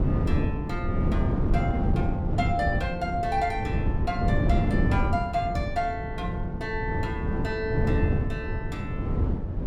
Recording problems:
wind on the microphone; below 210 Hz, SNR -3 dB

